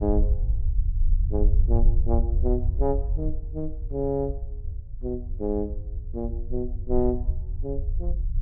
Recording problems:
low-frequency rumble; below 62 Hz, SNR -2 dB

